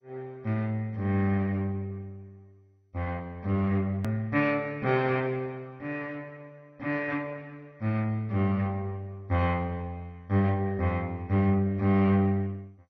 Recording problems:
lossy compression; MP2, log-spectral distance 2 dB, nothing above 17.1 kHz
edit click; at 4 s

